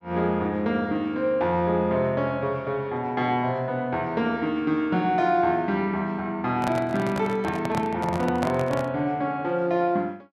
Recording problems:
handling noise; from 6.5 to 9 s; peak 0 dB vs average level

